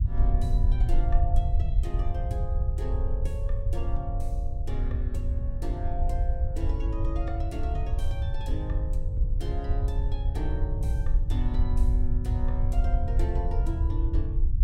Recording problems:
rumble; below 70 Hz, SNR -9 dB

